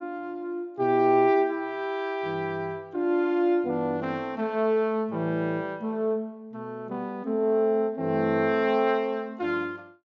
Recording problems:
treble cut off; nothing above 7.1 kHz

